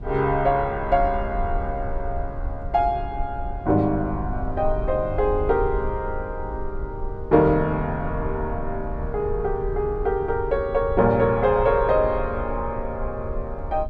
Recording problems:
low-frequency rumble; below 68 Hz, SNR 10 dB

